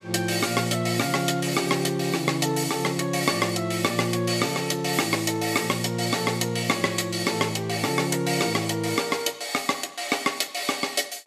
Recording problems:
none

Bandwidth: 14.5 kHz